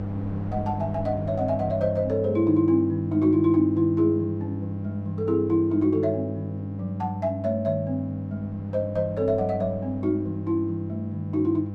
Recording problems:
hum; 50 Hz, harmonics up to 800 Hz, SNR 7 dB
wind on the microphone; below 450 Hz, SNR 21 dB

